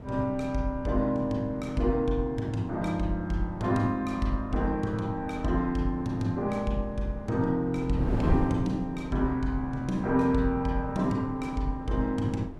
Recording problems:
wind noise; below 270 Hz, SNR 11 dB

